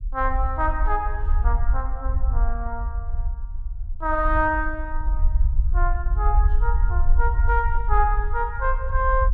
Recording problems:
low-frequency rumble; below 56 Hz, SNR -1 dB

